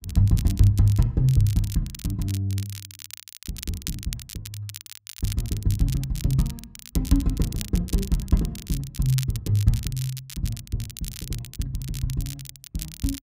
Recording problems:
crackle; vinyl, SNR 13 dB

